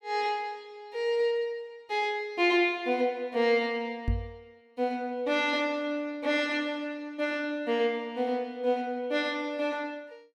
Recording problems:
knock on the microphone; at 4 s; peak +4 dB vs average level

